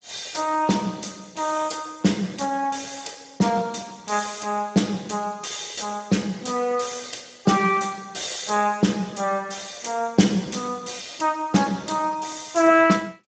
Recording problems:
codec artefacts; Speex, log-spectral distance 8 dB, nothing above 7.6 kHz

